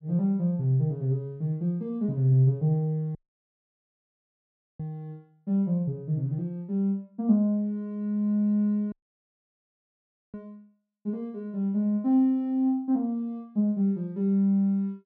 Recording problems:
dropout; at 3 s for 1.5 s and at 9 s for 1.5 s

